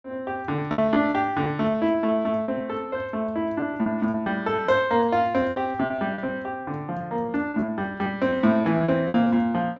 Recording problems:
treble cut off; nothing above 8 kHz
packet loss; 13% of the sound replaced, filled with repeated pitch periods

